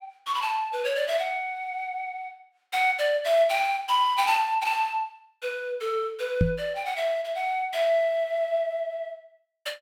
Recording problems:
knock on the microphone; at 6.5 s; peak +7 dB vs average level

